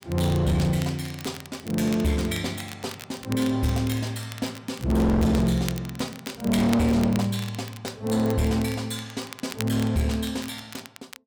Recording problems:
distortion; hard clipping, uneven, signal-to-distortion ratio 7 dB
crackle; vinyl, SNR 16 dB

